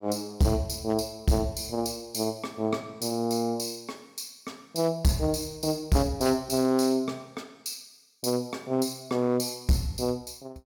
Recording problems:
distortion; hard clipping, signal-to-distortion ratio 10 dB

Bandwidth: 17.5 kHz